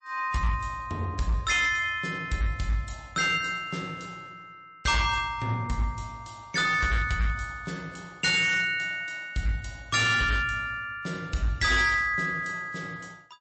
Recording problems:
lossy compression; MP3, log-spectral distance 3 dB, nothing above 8 kHz
distorted audio; hard clipping, signal-to-distortion ratio 11 dB

